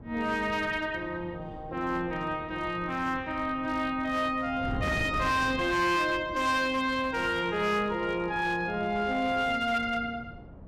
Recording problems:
distorted audio; hard clipping, signal-to-distortion ratio 12 dB
wind on the microphone; below 290 Hz, SNR 15 dB

